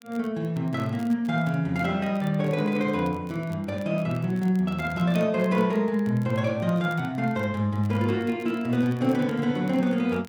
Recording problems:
crackle; vinyl, SNR 28 dB

